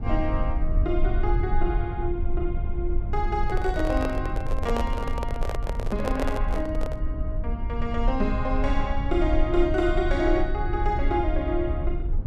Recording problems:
low-frequency rumble; below 62 Hz, SNR 1 dB
handling noise; from 3.5 to 7 s; peak +3 dB vs average level

